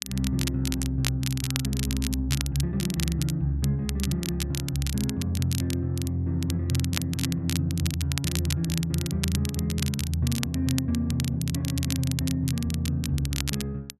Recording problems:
crackling; vinyl, SNR 7 dB

